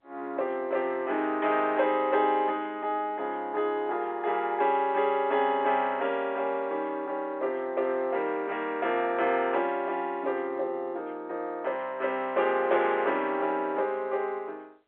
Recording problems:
phone line; 300 Hz to 3.6 kHz, G.711

